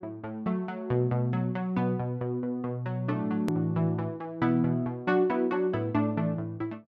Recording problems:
click at an edit; at 3.5 s

